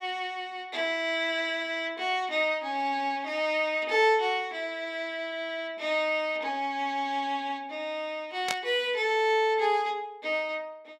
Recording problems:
static burst; at 8.5 s; peak +2 dB vs average level

